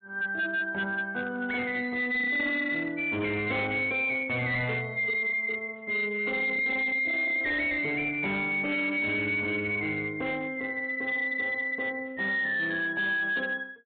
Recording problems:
treble missing; nothing above 4 kHz
lossy codec; AAC, log-spectral distance 2 dB
distortion; hard clipping, signal-to-distortion ratio 10 dB

